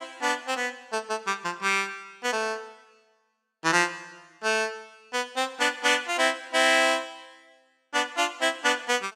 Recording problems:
none

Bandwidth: 16.5 kHz